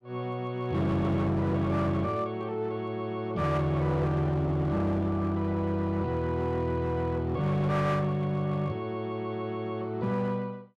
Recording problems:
distorted audio; hard clipping, uneven, signal-to-distortion ratio 11 dB

